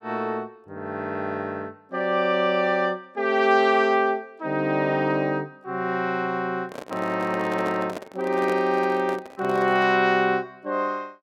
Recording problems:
handling noise; from 6.5 to 10 s; peak -5 dB vs average level

